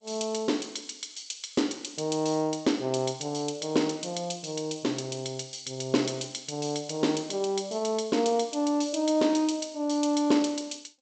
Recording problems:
codec artefacts; G.722, log-spectral distance 8 dB, nothing above 8 kHz

